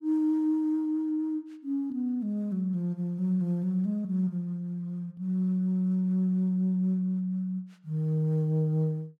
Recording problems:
none

